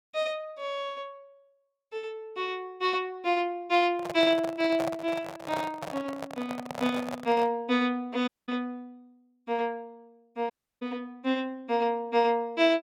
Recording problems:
handling noise; from 4 to 7.5 s; peak +1 dB vs average level
audio cutting out; at 8.5 s and at 11 s

